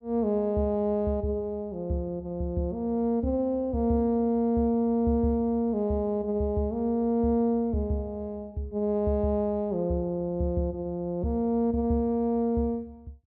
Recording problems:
none

